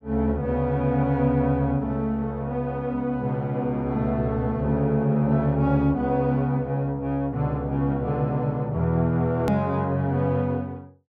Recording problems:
edit click; at 9.5 s

